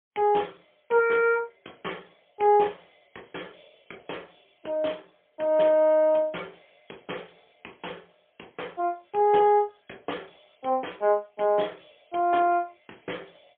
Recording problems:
telephone audio; 260 Hz to 3.4 kHz, AMR-NB, then MP3

